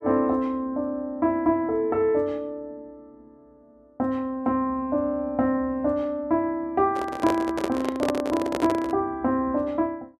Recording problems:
microphone handling noise; from 7 to 9 s; peak +3 dB vs average level

